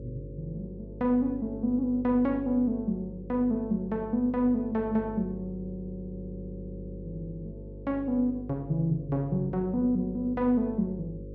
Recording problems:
hum; 50 Hz, harmonics up to 550 Hz, SNR 14 dB

